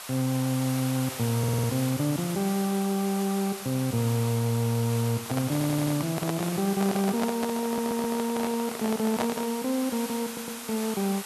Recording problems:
background hiss; SNR 9 dB
stutter; 4 times, first at 1.5 s
microphone handling noise; from 5 to 9.5 s; peak +3 dB vs average level

